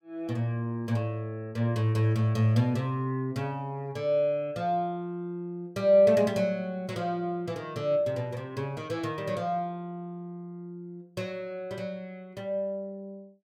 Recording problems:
none

